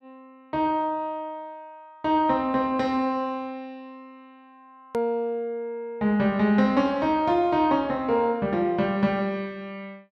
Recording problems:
hard cut with a click; at 5 s

